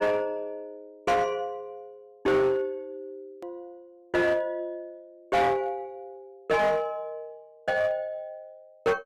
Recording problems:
distorted audio; hard clipping, uneven, signal-to-distortion ratio 10 dB
edit click; at 3.5 s

